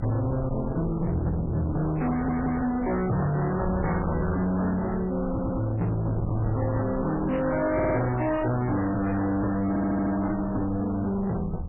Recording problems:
lossy compression; MP3, then MP3, log-spectral distance 3 dB, nothing above 2.9 kHz
distorted audio; soft clipping, signal-to-distortion ratio 6 dB
wind noise; below 420 Hz, SNR 7 dB
audio stuttering; 4 times, first at 2 s

